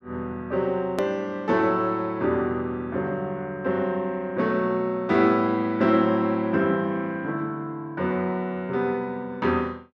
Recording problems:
edit click; at 1 s

